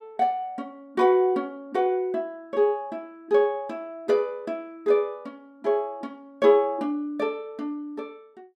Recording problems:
none

